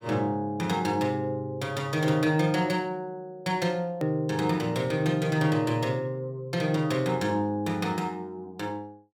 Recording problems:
edit click; at 4 s

